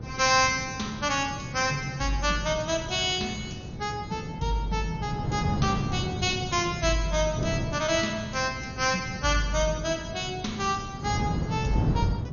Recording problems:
codec artefacts; MP2, log-spectral distance 5 dB, nothing above 6.7 kHz
hum; 60 Hz, harmonics up to 540 Hz, SNR 20 dB
wind on the microphone; below 230 Hz, SNR 7 dB

